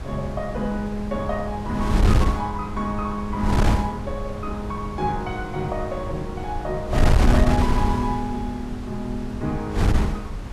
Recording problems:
wind on the microphone; below 150 Hz, SNR -1 dB

